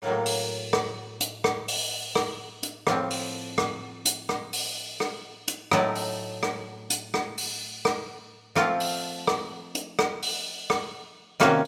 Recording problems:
none

